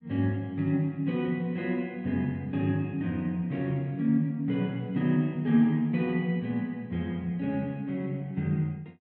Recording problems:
low-pass filter; nothing above 5.3 kHz

